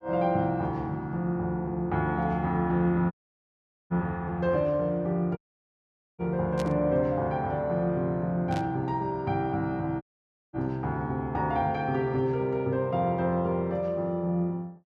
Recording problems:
audio cutting out; at 3 s for 1 s, at 5.5 s for 1 s and at 10 s for 0.5 s
static burst; at 6.5 s and at 8.5 s; peak -8 dB vs average level

